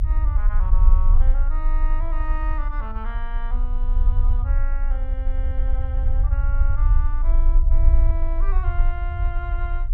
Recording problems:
low-frequency rumble; below 48 Hz, strongest tone 26 Hz, SNR -14 dB

